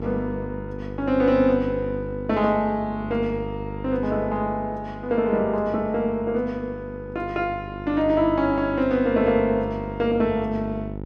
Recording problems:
hum; 50 Hz, harmonics up to 950 Hz, SNR 11 dB

